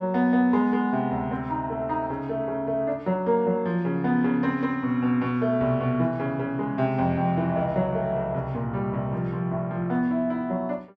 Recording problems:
none

